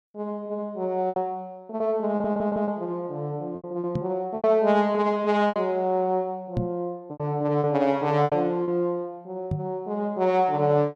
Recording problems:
packet loss; 7% of the sound replaced, filled with repeated pitch periods
stutter; at 2 s
microphone thump; at 4 s, at 6.5 s and at 9.5 s; peak +2 dB vs average level

